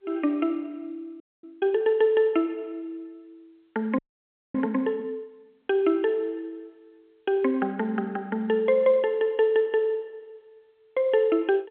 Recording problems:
telephone audio; 240 Hz to 3.3 kHz, G.711
audio freezing; at 1 s and at 4 s for 0.5 s

